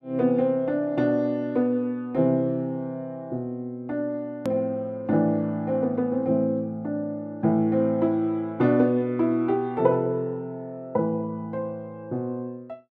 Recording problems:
click at an edit; at 4.5 s

